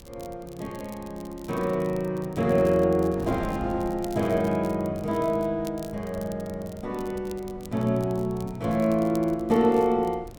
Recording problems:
wind on the microphone; below 280 Hz, SNR 19 dB
crackling; vinyl, SNR 24 dB

